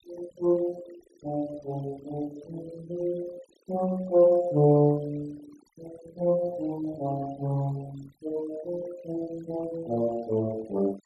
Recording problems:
noise reduction artefacts; signal-to-artefact ratio 20 dB

